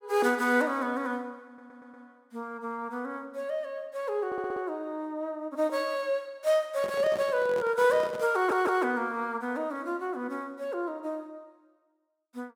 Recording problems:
stutter; at 1.5 s, at 4.5 s and at 8.5 s
microphone handling noise; from 7 to 8.5 s; peak -5 dB vs average level

